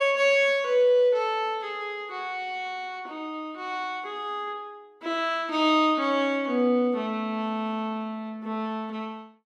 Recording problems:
none

